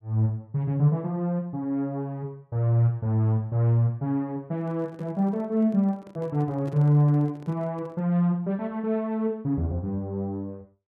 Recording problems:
microphone handling noise; from 4.5 to 8 s; peak -12 dB vs average level

